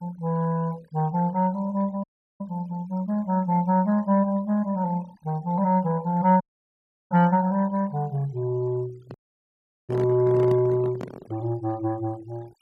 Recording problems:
denoising artefacts; signal-to-artefact ratio 26 dB
dropout; at 2 s, at 6.5 s for 0.5 s and at 9 s for 0.5 s
handling noise; from 9 to 11 s; peak -7 dB vs average level

